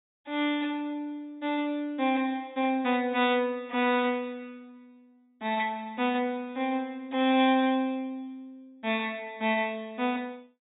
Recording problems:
low-pass filter; nothing above 4 kHz

